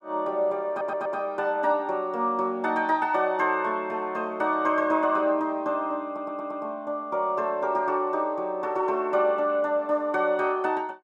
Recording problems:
audio stuttering; at 0.5 s and at 6 s

